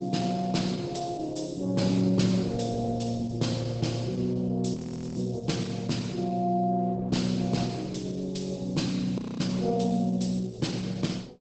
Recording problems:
codec artefacts; Opus, log-spectral distance 4 dB, nothing above 8 kHz
frozen audio; at 4.5 s and at 9 s

